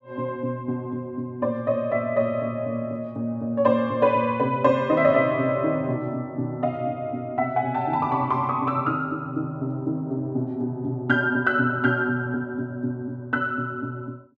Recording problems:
none

